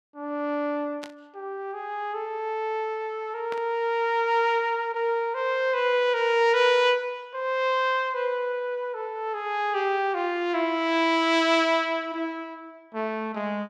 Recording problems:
static burst; at 1 s and at 3.5 s; peak -10 dB vs average level

